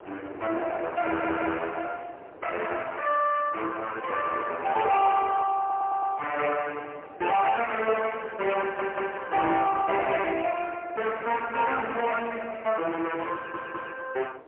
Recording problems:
telephone audio; 280 Hz to 3 kHz, AMR-NB, then MP3
distorted audio; soft clipping, signal-to-distortion ratio 9 dB
wind noise; below 850 Hz, SNR 19 dB
stutter; 4 times, first at 1 s

